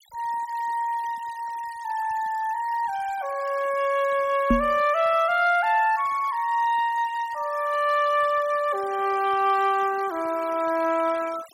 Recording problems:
denoising artefacts; signal-to-artefact ratio 20 dB
microphone bump; at 4.5 s; peak +6 dB vs average level

